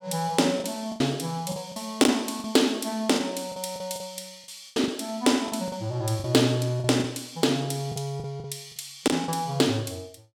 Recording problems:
packet loss; 10% of the sound replaced, filled with the last packet

